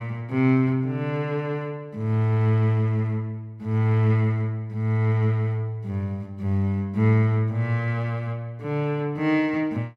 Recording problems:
none

